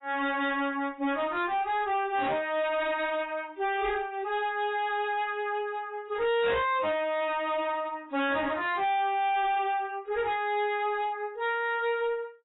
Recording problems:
codec artefacts; AAC, log-spectral distance 2 dB, nothing above 3.8 kHz
distorted audio; hard clipping, uneven, signal-to-distortion ratio 6 dB

